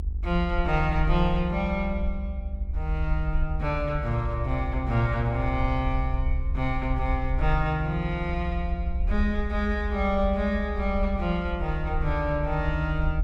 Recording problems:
hum; 50 Hz, harmonics up to 850 Hz, SNR 22 dB
rumble; below 68 Hz, SNR 3 dB

